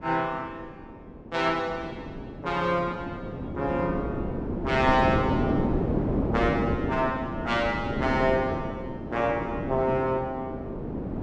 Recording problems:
wind noise; below 410 Hz, SNR 3 dB

